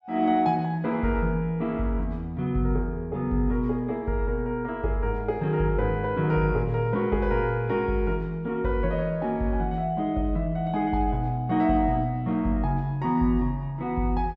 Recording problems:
none

